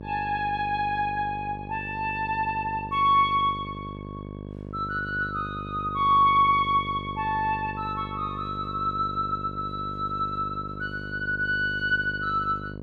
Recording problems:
hum; 50 Hz, harmonics up to 1.1 kHz, SNR 12 dB

